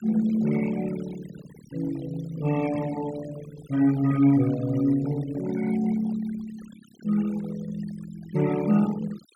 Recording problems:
noise reduction artefacts; signal-to-artefact ratio 17 dB

